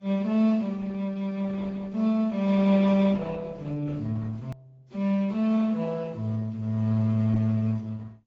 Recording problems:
lossy codec; Opus, then AAC, log-spectral distance 2 dB
hard cut with a click; at 4.5 s

